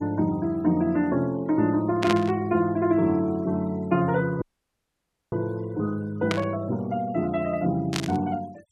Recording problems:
denoising artefacts; signal-to-artefact ratio 26 dB
burst of static; at 2 s, at 6.5 s and at 8 s; peak +2 dB vs average level
dropout; at 4.5 s for 1 s

